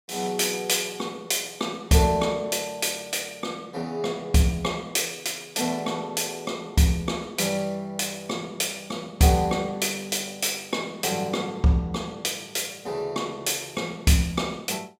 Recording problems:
none

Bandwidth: 16 kHz